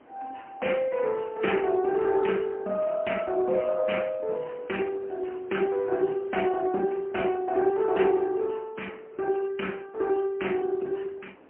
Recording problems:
phone line; 240 Hz to 3.1 kHz, AMR-NB, then MP3
wind on the microphone; below 970 Hz, SNR 24 dB

